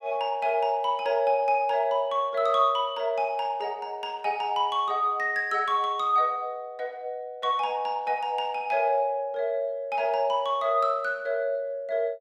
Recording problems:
none

